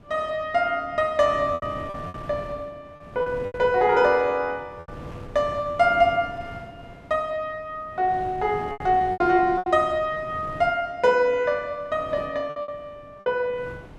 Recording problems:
wind on the microphone; below 520 Hz, SNR 18 dB
lost packets; 7% of the sound replaced, filled with repeated pitch periods

